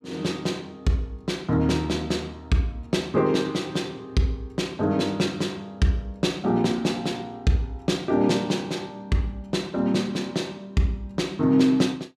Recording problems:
none

